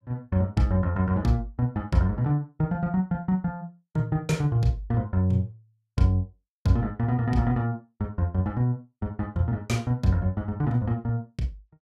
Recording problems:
none

